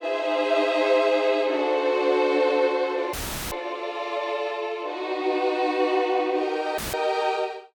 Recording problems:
audio cutting out; at 3 s and at 7 s; filled with static

